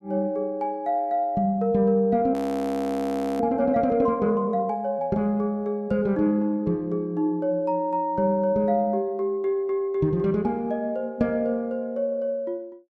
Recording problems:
audio freezing; at 2.5 s for 1 s

